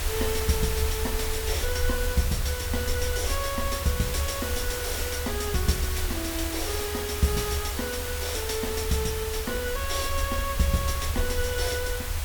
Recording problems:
hiss; slope -1 dB per octave, SNR 3 dB
low-frequency rumble; below 76 Hz, SNR 5 dB

